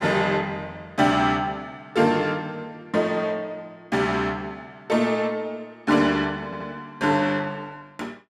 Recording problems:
stutter; at 6.5 s

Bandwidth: 14 kHz